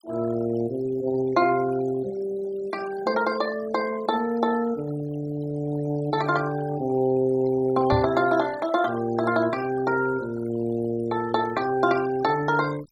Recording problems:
denoising artefacts; signal-to-artefact ratio 17 dB
microphone thump; at 8 s; peak +2 dB vs average level

